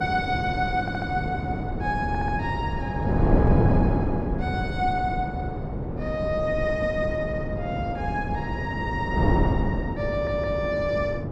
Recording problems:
electrical hum; 50 Hz, harmonics up to 550 Hz, SNR 10 dB
wind on the microphone; below 330 Hz, SNR -1 dB
audio stuttering; at 1 s, at 2 s and at 10 s

